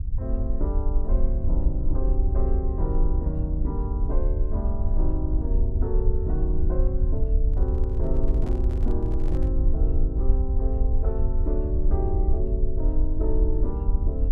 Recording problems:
rumble; below 60 Hz, SNR -7 dB
microphone handling noise; from 7.5 to 9.5 s; peak -5 dB vs average level

